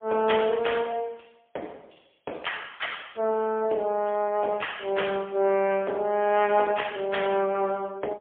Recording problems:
telephone audio; 280 Hz to 3.4 kHz, AMR-NB, then MP3

